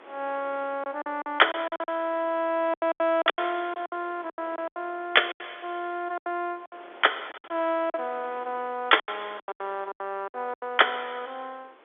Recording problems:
phone line; 280 Hz to 3.6 kHz, G.711
wind on the microphone; below 1.9 kHz, SNR 23 dB
packet loss; 14% of the sound replaced, filled with silence

